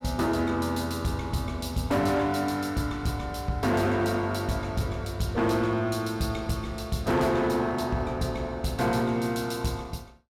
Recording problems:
distorted audio; hard clipping, signal-to-distortion ratio 12 dB

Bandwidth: 16.5 kHz